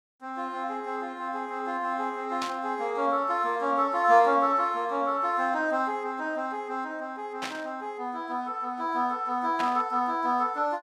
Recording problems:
burst of static; at 2.5 s, at 7.5 s and at 9.5 s; peak -2 dB vs average level

